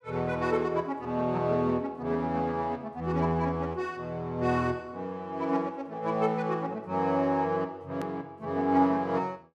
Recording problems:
click at an edit; at 8 s

